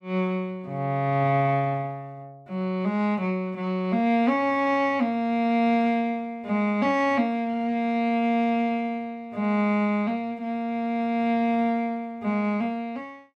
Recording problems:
none

